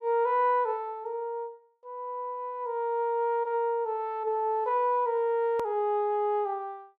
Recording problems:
hard cut with a click; at 5.5 s

